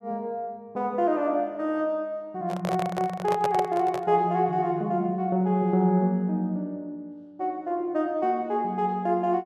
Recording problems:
microphone handling noise; from 2.5 to 4 s; peak 0 dB vs average level

